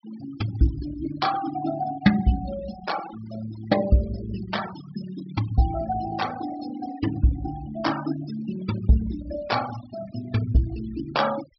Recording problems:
treble missing; nothing above 5.4 kHz
denoising artefacts; signal-to-artefact ratio 12 dB

